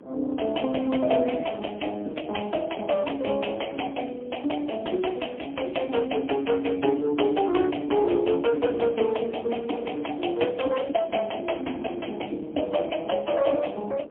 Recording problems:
phone line; 220 Hz to 3.3 kHz, AMR-NB, then MP3
wind on the microphone; below 440 Hz, SNR 17 dB

